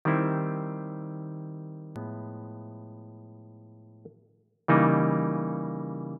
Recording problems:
hard cut with a click; at 2 s

